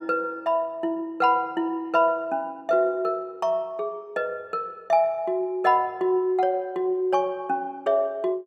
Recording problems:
none

